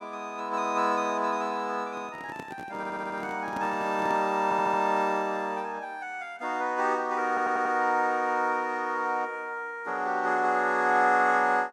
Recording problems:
microphone handling noise; from 2 to 4.5 s; peak -7 dB vs average level
stutter; at 3 s, at 4.5 s and at 7.5 s

